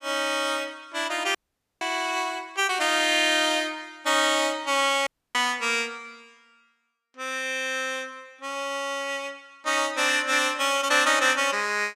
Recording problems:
dropout; at 1.5 s and at 5 s

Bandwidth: 15 kHz